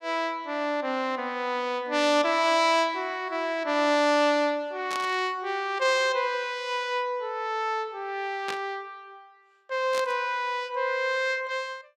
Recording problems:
burst of static; at 5 s, at 8.5 s and at 10 s; peak -3 dB vs average level

